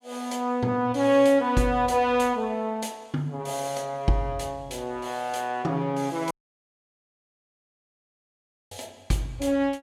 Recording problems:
audio cutting out; at 6.5 s for 2.5 s

